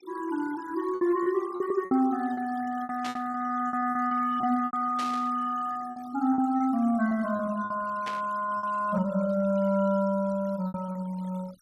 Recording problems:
noise reduction artefacts; signal-to-artefact ratio 21 dB
lost packets; 11% of the sound replaced, filled with repeated pitch periods
static burst; at 3 s, at 5 s and at 8 s; peak -6 dB vs average level

